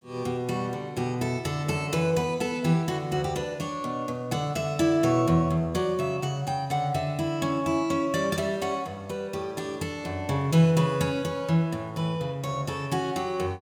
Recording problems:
none

